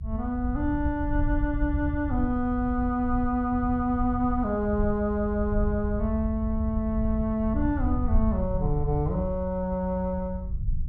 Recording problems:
rumble; below 80 Hz, SNR 4 dB

